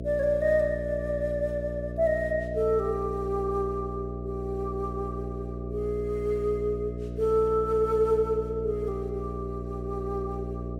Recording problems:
mains hum; 60 Hz, harmonics up to 660 Hz, SNR 7 dB

